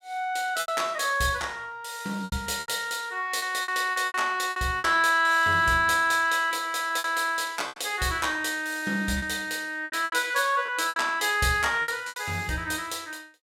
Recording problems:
lost packets; 10% of the sound replaced, filled with repeated pitch periods

